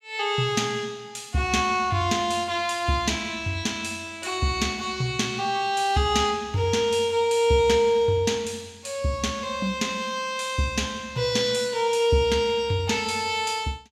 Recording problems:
none

